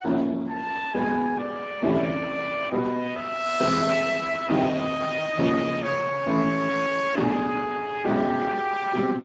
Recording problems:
codec artefacts; Speex, log-spectral distance 5 dB, nothing above 7.6 kHz

